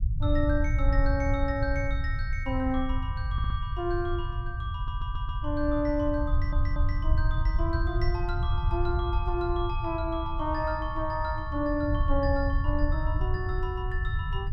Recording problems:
rumble; below 86 Hz, SNR -1 dB
audio stuttering; at 3.5 s, at 4.5 s and at 6.5 s

